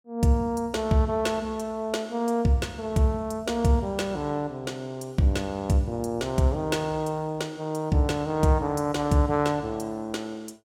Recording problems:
none

